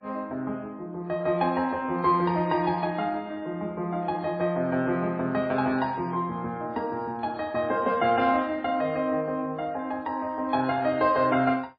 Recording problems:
codec artefacts; MP3, log-spectral distance 2 dB, nothing above 4.4 kHz

